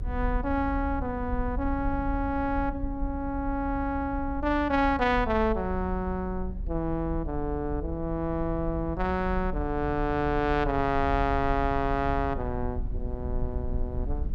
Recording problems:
low-frequency rumble; below 68 Hz, SNR 7 dB

